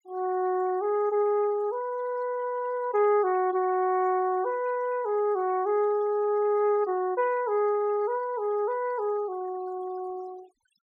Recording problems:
noise reduction artefacts; signal-to-artefact ratio 24 dB

